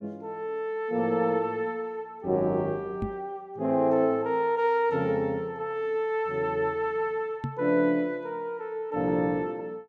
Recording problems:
knock on the microphone; at 3 s and at 7.5 s; peak 0 dB vs average level

